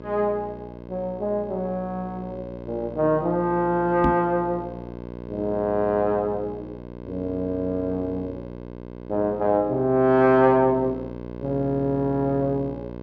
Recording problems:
hum; 60 Hz, harmonics up to 1.6 kHz, SNR 14 dB
microphone thump; at 4 s; peak +3 dB vs average level

